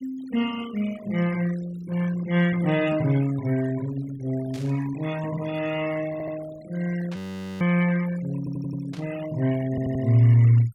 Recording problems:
noise reduction artefacts; signal-to-artefact ratio 17 dB
static burst; at 4.5 s, at 7 s and at 9 s; peak -14 dB vs average level
stutter; at 6 s, at 8.5 s and at 9.5 s
frozen audio; at 7 s

